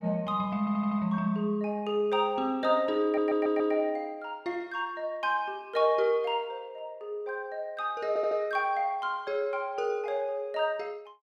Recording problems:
audio stuttering; at 0.5 s, at 3 s and at 8 s

